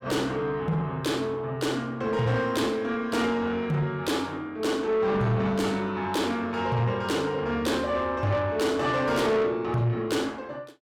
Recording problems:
distortion; soft clipping, signal-to-distortion ratio 10 dB

